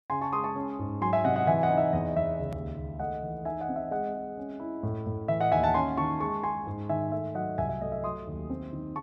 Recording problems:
click at an edit; at 2.5 s

